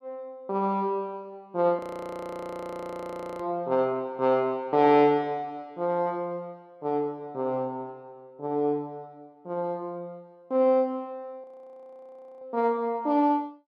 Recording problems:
frozen audio; at 2 s for 1.5 s and at 11 s for 1 s

